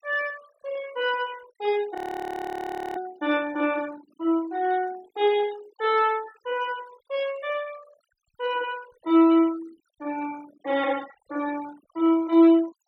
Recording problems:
denoising artefacts; signal-to-artefact ratio 21 dB
frozen audio; at 2 s for 1 s

